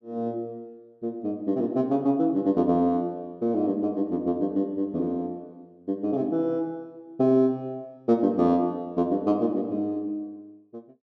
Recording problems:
none

